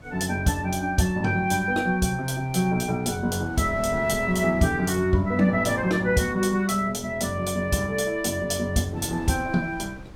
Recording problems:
wind noise; below 340 Hz, SNR 20 dB

